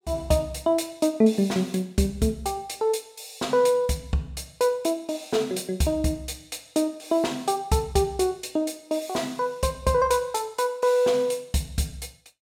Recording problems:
none

